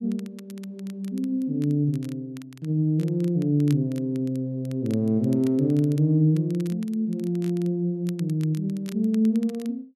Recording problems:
crackle; vinyl, SNR 26 dB

